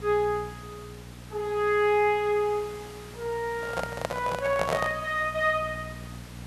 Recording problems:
hum; 60 Hz, harmonics up to 600 Hz, SNR 17 dB
hiss; slope -3 dB per octave, SNR 19 dB
handling noise; from 3.5 to 5 s; peak +3 dB vs average level

